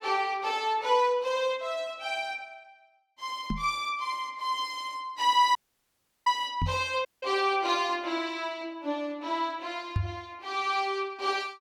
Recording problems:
knock on the microphone; at 3.5 s, at 6.5 s and at 10 s; peak +4 dB vs average level
dropout; at 5.5 s for 0.5 s and at 7 s

